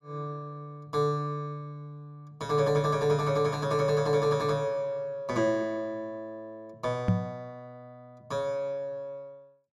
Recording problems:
knock on the microphone; at 7 s; peak +8 dB vs average level

